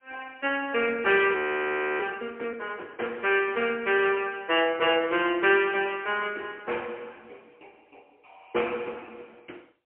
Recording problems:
phone line; 280 Hz to 3.1 kHz, AMR-NB, then MP3
frozen audio; at 1.5 s for 0.5 s

